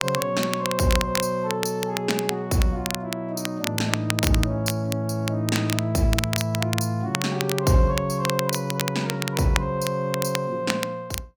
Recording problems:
crackle; vinyl, SNR 6 dB

